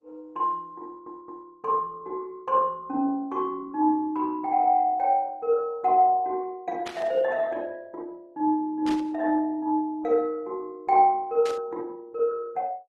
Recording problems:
lossy compression; Opus, log-spectral distance 2 dB
audio stuttering; at 1 s
burst of static; at 7 s, at 9 s and at 11 s; peak -9 dB vs average level

